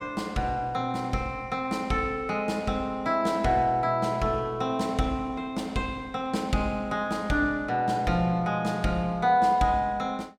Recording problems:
none

